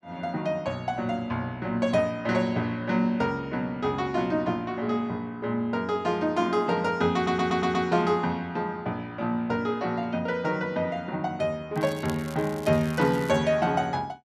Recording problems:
stutter; at 7 s
crackling; from 12 to 13 s; loose cable, SNR 19 dB

